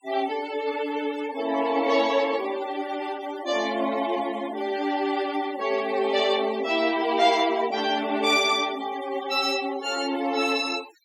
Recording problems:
denoising artefacts; signal-to-artefact ratio 16 dB

